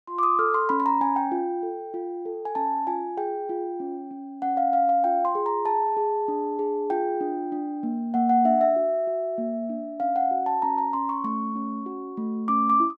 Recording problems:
none

